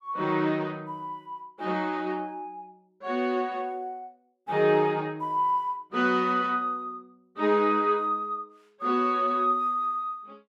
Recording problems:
none

